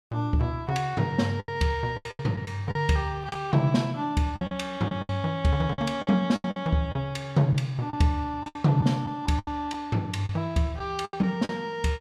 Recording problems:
packet loss; 10% of the sound replaced, filled with the last packet

